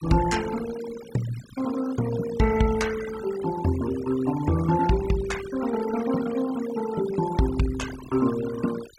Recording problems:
denoising artefacts; signal-to-artefact ratio 13 dB

